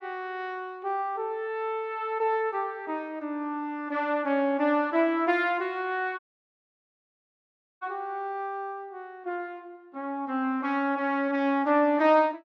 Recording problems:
dropout; at 6 s for 1.5 s

